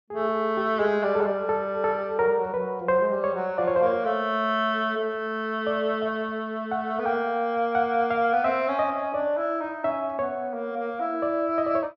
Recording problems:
low-pass filter; nothing above 7.1 kHz

